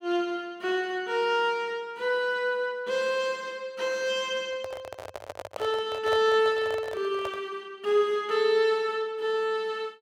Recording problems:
handling noise; from 4.5 to 7.5 s; peak -2 dB vs average level

